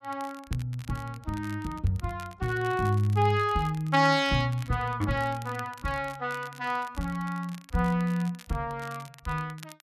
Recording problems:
crackle; vinyl, SNR 21 dB

